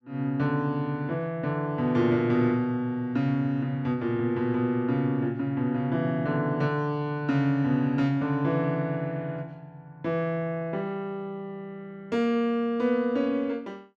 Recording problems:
none

